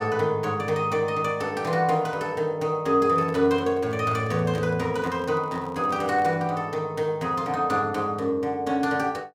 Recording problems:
microphone handling noise; from 3 to 6.5 s; peak -11 dB vs average level

